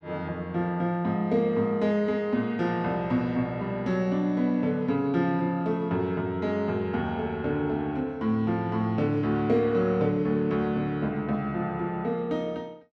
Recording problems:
none

